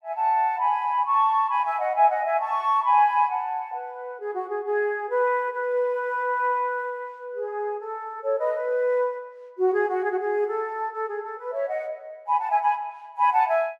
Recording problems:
none

